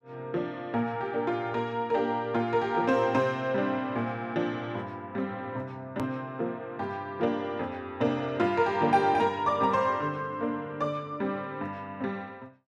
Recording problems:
hard cut with a click; at 6 s

